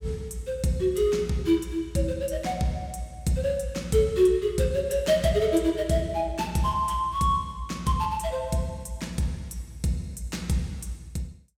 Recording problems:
none

